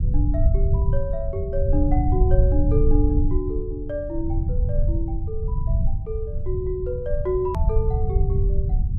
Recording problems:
low-frequency rumble; below 88 Hz, SNR -4 dB
hard cut with a click; at 7.5 s

